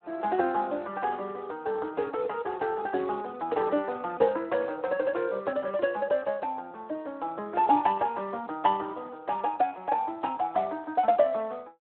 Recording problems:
telephone audio; 240 Hz to 2.8 kHz, Speex

